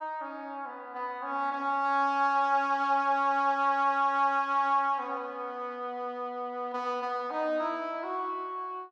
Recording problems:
none

